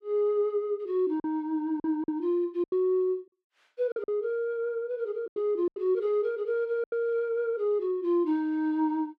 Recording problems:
packet loss; 6% of the sound replaced, filled with silence

